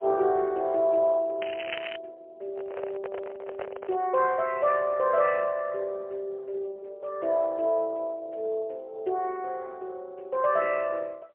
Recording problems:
phone line; 340 Hz to 3.9 kHz, AMR-NB, then MP3
crackle; at 1.5 s; loose cable, SNR 10 dB
microphone handling noise; from 2.5 to 4 s; peak -5 dB vs average level

